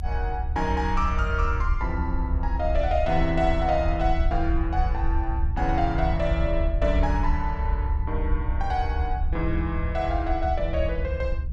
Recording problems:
rumble; below 70 Hz, SNR 3 dB
wind on the microphone; below 66 Hz, SNR 4 dB

